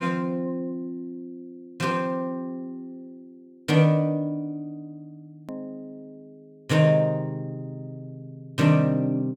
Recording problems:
edit click; at 5.5 s

